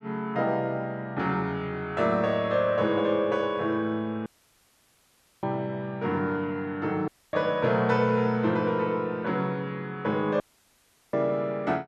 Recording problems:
dropout; at 4.5 s for 1 s, at 7 s and at 10 s for 0.5 s

